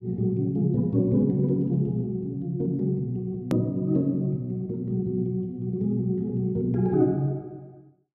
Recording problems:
click at an edit; at 3.5 s

